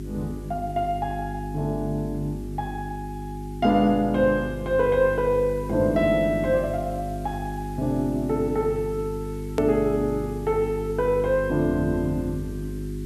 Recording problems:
hum; 50 Hz, harmonics up to 400 Hz, SNR 8 dB
background hiss; slope +1 dB per octave, SNR 27 dB
edit click; at 9.5 s

